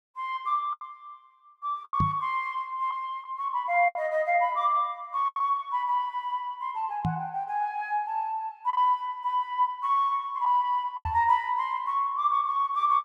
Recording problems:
lost packets; 4% of the sound replaced, filled with the last packet
microphone thump; at 2 s, at 7 s and at 11 s; peak +3 dB vs average level

